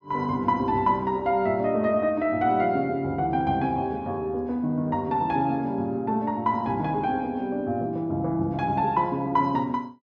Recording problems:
none

